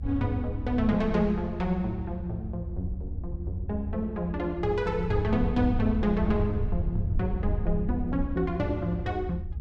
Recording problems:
low-frequency rumble; below 80 Hz, SNR 5 dB

